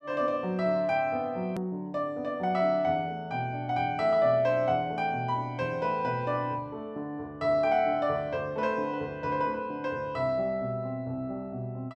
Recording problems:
edit click; at 1.5 s

